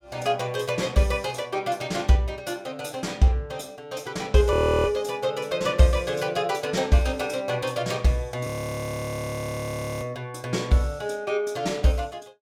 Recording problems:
frozen audio; at 4.5 s and at 8.5 s for 1.5 s

